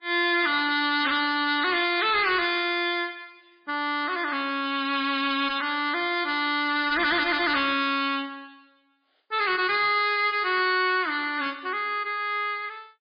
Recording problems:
codec artefacts; MP3, log-spectral distance 4 dB, nothing above 4.4 kHz
distortion; hard clipping, uneven, signal-to-distortion ratio 11 dB

